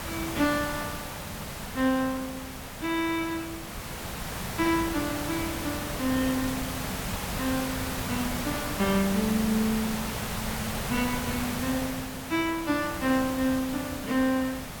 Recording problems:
hiss; SNR 4 dB

